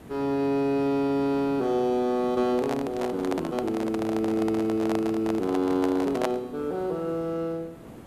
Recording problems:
background hiss; slope -8 dB per octave, SNR 17 dB
microphone handling noise; from 2.5 to 6.5 s; peak +3 dB vs average level

